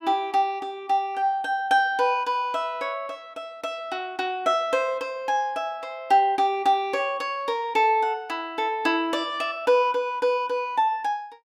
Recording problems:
none

